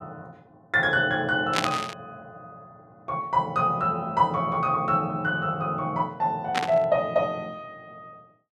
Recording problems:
static burst; at 1.5 s and at 6.5 s; peak +4 dB vs average level

